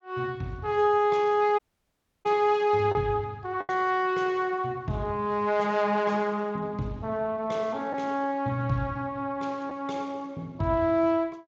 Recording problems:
lossy codec; Speex, log-spectral distance 2 dB
lost packets; 1.2% of the sound replaced, filled with the last packet
audio cutting out; at 1.5 s for 0.5 s

